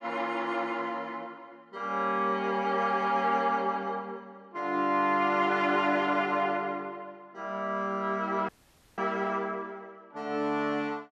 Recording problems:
dropout; at 8.5 s

